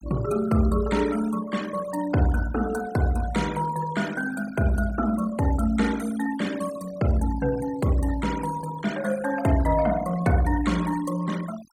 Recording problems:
noise reduction artefacts; signal-to-artefact ratio 16 dB

